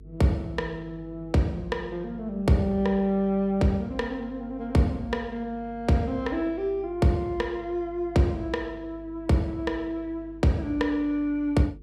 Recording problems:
electrical hum; 50 Hz, harmonics up to 450 Hz, SNR 20 dB

